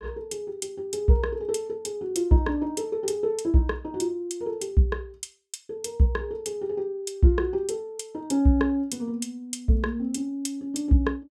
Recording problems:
none

